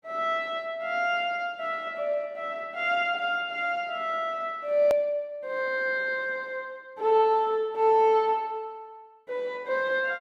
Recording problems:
click at an edit; at 5 s

